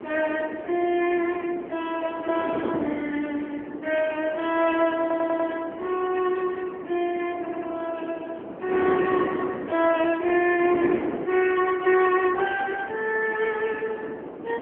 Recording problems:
telephone audio; 150 Hz to 3.1 kHz, AMR-NB
wind on the microphone; below 550 Hz, SNR 9 dB
stutter; at 5 s and at 7.5 s

